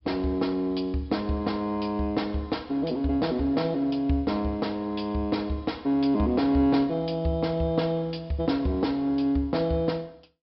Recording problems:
low-pass filter; nothing above 5.2 kHz

